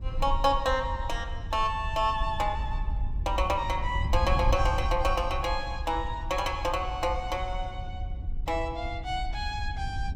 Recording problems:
wind on the microphone; below 74 Hz, SNR 5 dB

